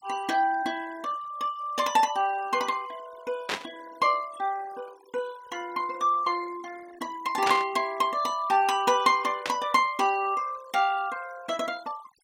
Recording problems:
noise reduction artefacts; signal-to-artefact ratio 20 dB
burst of static; at 3.5 s, at 7.5 s and at 9.5 s; peak +2 dB vs average level

